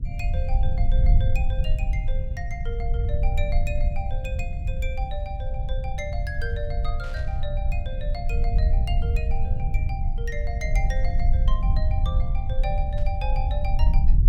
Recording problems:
rumble; below 64 Hz, SNR -9 dB
burst of static; at 7 s and at 13 s; peak -8 dB vs average level

